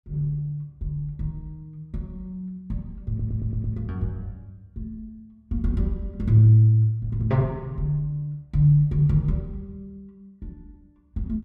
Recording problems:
stutter; at 3 s

